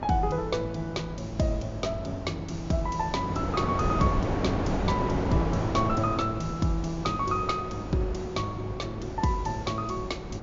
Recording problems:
treble missing; nothing above 7.3 kHz
hum; 50 Hz, harmonics up to 350 Hz, SNR 15 dB
wind on the microphone; below 630 Hz, SNR 4 dB

